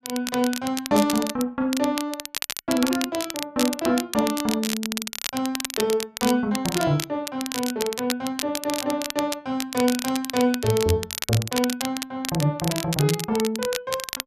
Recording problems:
crackling; vinyl, SNR 6 dB

